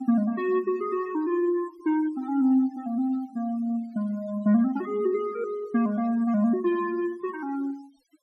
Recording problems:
noise reduction artefacts; signal-to-artefact ratio 25 dB

